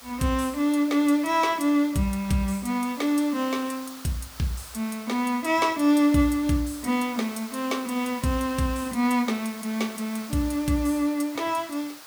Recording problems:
background hiss; SNR 17 dB

